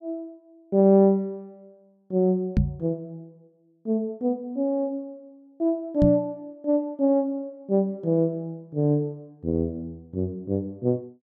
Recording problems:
microphone thump; at 2.5 s and at 6 s; peak +7 dB vs average level

